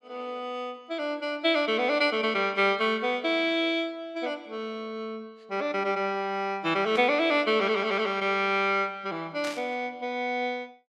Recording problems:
burst of static; at 7 s and at 9.5 s; peak -7 dB vs average level

